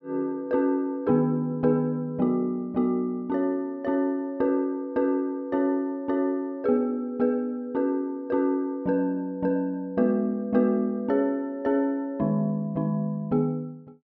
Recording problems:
none

